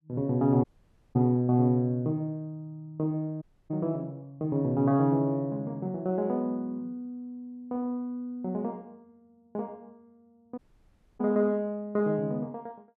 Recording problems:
dropout; at 0.5 s for 0.5 s, at 3.5 s and at 11 s for 0.5 s

